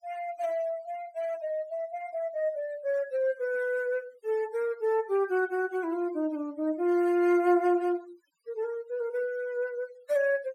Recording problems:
noise reduction artefacts; signal-to-artefact ratio 23 dB

